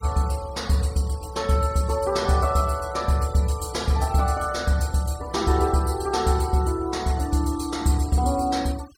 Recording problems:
denoising artefacts; signal-to-artefact ratio 20 dB

